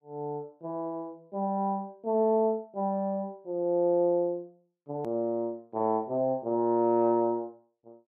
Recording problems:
edit click; at 5 s

